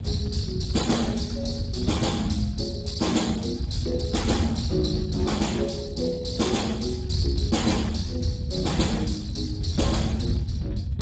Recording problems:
codec artefacts; Speex, log-spectral distance 3 dB, nothing above 7.6 kHz
low-frequency rumble; below 130 Hz, SNR 4 dB

